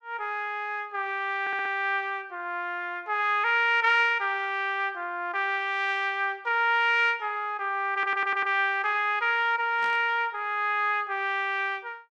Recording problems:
audio stuttering; at 1.5 s and at 8 s
static burst; at 10 s; peak -11 dB vs average level

